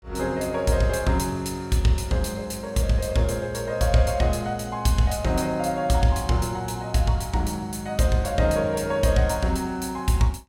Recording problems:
none

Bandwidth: 16.5 kHz